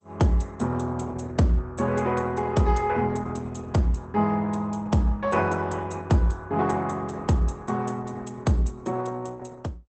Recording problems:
lossy codec; Opus, log-spectral distance 4 dB, nothing above 8.2 kHz

